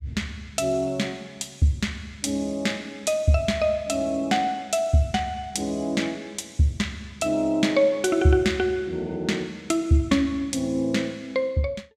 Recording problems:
none

